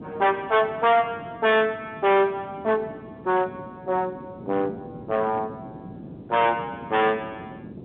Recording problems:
telephone audio; 130 Hz to 3.7 kHz, G.711
distortion; hard clipping, signal-to-distortion ratio 11 dB
wind on the microphone; below 440 Hz, SNR 17 dB

